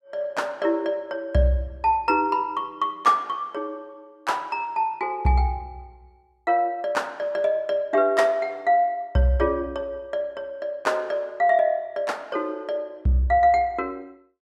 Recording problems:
none

